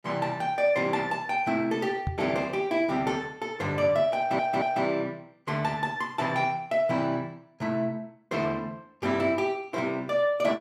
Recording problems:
knock on the microphone; at 2 s; peak 0 dB vs average level
stutter; at 4 s

